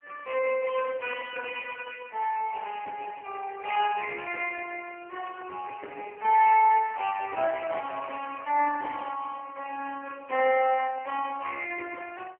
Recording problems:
phone line; 300 Hz to 3 kHz, AMR-NB

